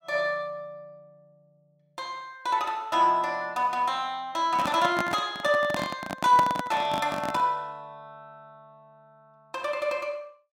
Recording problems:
microphone handling noise; from 4.5 to 7.5 s; peak +1 dB vs average level

